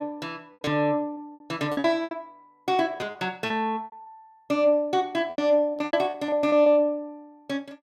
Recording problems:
lost packets; 14% of the sound replaced, filled with repeated pitch periods

